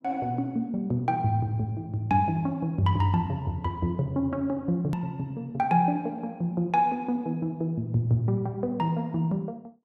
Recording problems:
edit click; at 5 s

